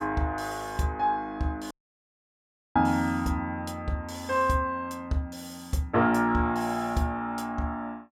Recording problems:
audio cutting out; at 1.5 s for 1 s

